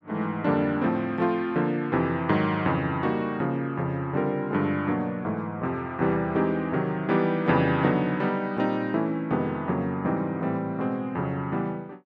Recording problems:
none

